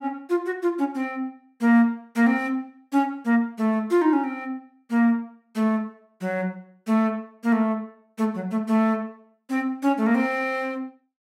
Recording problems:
none

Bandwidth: 16 kHz